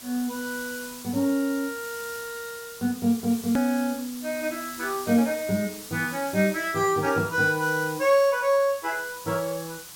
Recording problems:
background hiss; slope +1 dB per octave, SNR 13 dB
hard cut with a click; at 3.5 s

